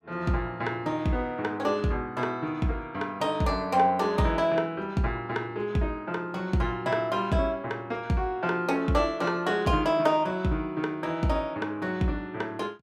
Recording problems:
none

